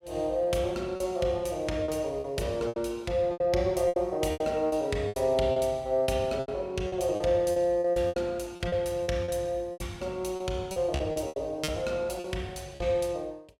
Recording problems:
lost packets; 12% of the sound replaced, filled with repeated pitch periods

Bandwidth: 16.5 kHz